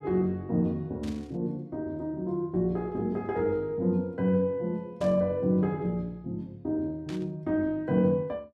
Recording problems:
static burst; at 1 s, at 5 s and at 7 s; peak -12 dB vs average level

